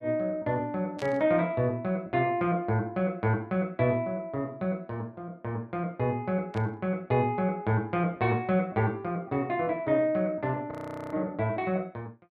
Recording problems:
static burst; at 1 s and at 6.5 s; peak -10 dB vs average level
audio freezing; at 11 s

